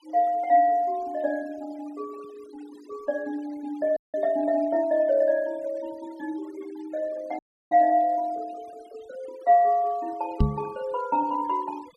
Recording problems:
denoising artefacts; signal-to-artefact ratio 25 dB
dropout; at 4 s and at 7.5 s
knock on the microphone; at 10 s; peak +7 dB vs average level

